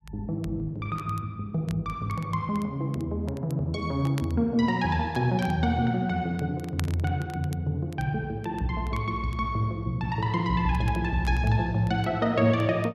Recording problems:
crackling; vinyl, SNR 23 dB

